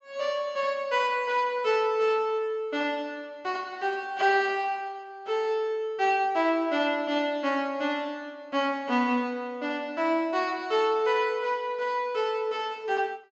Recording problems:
low-pass filter; nothing above 7.6 kHz

